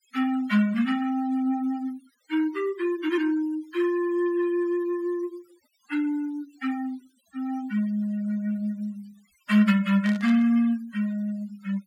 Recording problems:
noise reduction artefacts; signal-to-artefact ratio 21 dB
burst of static; at 10 s; peak -11 dB vs average level

